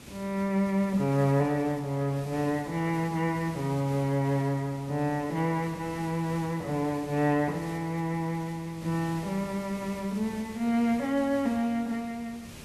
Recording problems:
background hiss; SNR 17 dB

